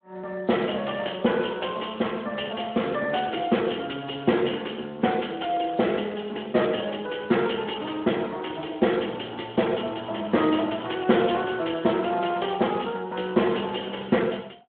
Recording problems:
phone line; 150 Hz to 3.5 kHz, Speex

